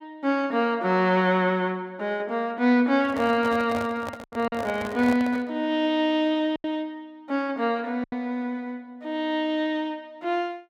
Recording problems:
lost packets; 3% of the sound replaced, filled with silence
handling noise; from 3 to 5.5 s; peak -4 dB vs average level

